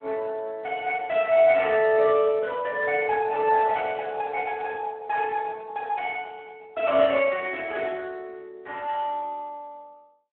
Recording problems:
telephone audio; 320 Hz to 3.3 kHz, Speex

